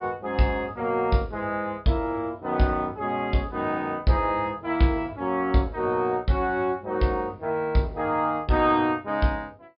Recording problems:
treble cut off; nothing above 5.5 kHz

